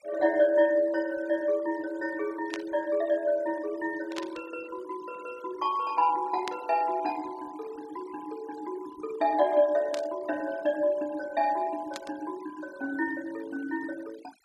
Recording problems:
noise reduction artefacts; signal-to-artefact ratio 21 dB
static burst; 5 times, first at 2.5 s; peak -3 dB vs average level

